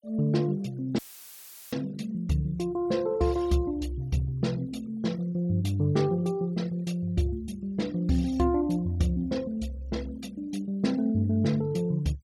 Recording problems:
denoising artefacts; signal-to-artefact ratio 24 dB
audio cutting out; at 1 s for 0.5 s; filled with static

